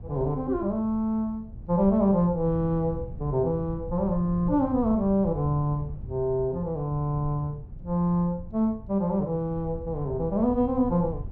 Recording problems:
wind on the microphone; below 120 Hz, SNR 14 dB

